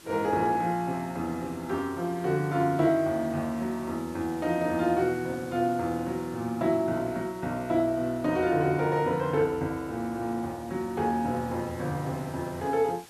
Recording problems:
background hiss; slope -1 dB per octave, SNR 22 dB

